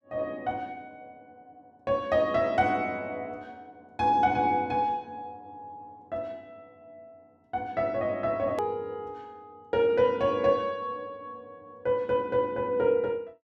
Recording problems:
hard cut with a click; at 8.5 s

